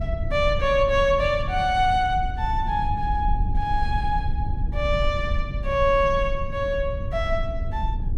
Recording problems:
rumble; below 84 Hz, SNR 5 dB

